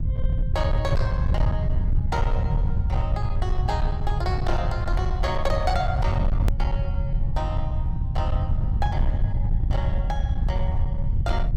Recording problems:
distortion; hard clipping, uneven, signal-to-distortion ratio 11 dB
low-frequency rumble; below 100 Hz, SNR -6 dB
hard cut with a click; at 6.5 s

